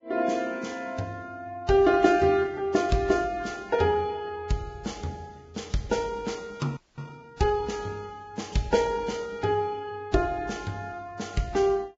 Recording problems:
lossy codec; Vorbis, log-spectral distance 3 dB, nothing above 7.3 kHz
audio freezing; at 7 s

